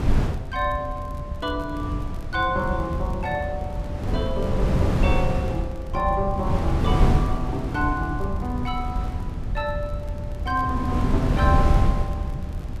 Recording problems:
low-frequency rumble; below 88 Hz, SNR 6 dB
wind on the microphone; below 160 Hz, SNR -1 dB
crackling; vinyl, SNR 29 dB

